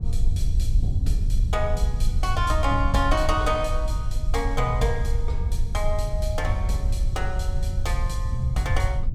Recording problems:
low-frequency rumble; below 74 Hz, SNR -2 dB

